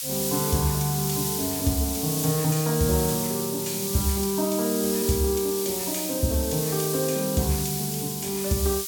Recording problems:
hiss; slope +6 dB per octave, SNR 2 dB

